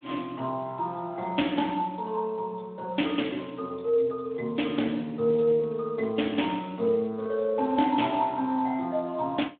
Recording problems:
telephone audio; 130 Hz to 3.6 kHz, Speex

